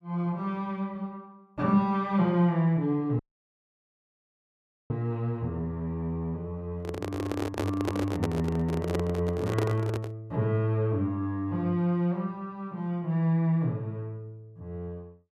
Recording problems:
dropout; at 3 s for 1.5 s
handling noise; from 7 to 10 s; peak +3 dB vs average level

